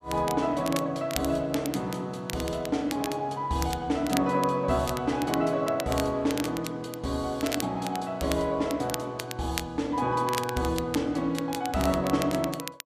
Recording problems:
crackle; vinyl, SNR 11 dB

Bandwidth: 14.5 kHz